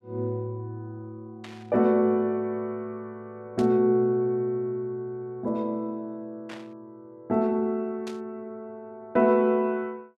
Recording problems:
burst of static; 4 times, first at 1.5 s; peak -11 dB vs average level

